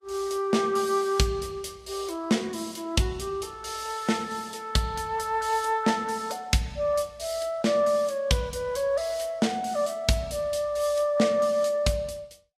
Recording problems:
lossy compression; Vorbis, log-spectral distance 3 dB, nothing above 13.8 kHz

